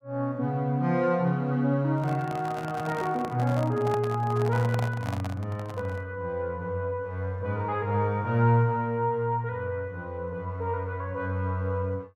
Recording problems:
handling noise; from 2 to 6 s; peak -2 dB vs average level

